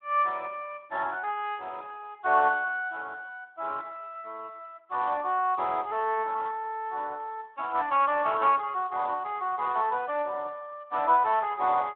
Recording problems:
telephone audio; 300 Hz to 3.7 kHz, Speex

